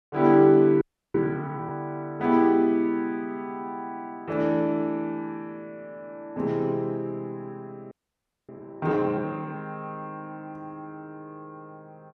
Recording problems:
frozen audio; at 1 s and at 8 s for 0.5 s

